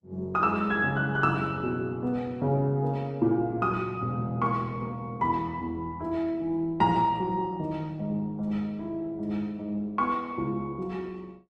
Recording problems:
lossy compression; Opus, log-spectral distance 2 dB

